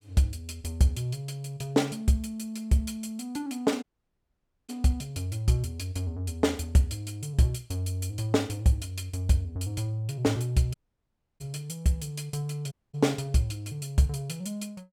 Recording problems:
dropout; at 4 s for 1 s, at 11 s for 0.5 s and at 13 s

